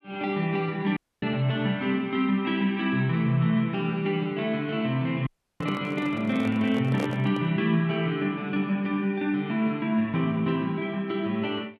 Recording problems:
audio cutting out; at 1 s and at 5.5 s
microphone handling noise; from 5.5 to 7.5 s; peak -2 dB vs average level

